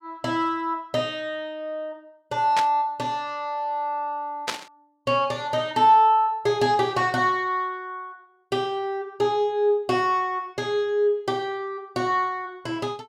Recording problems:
burst of static; at 2.5 s and at 4.5 s; peak +2 dB vs average level

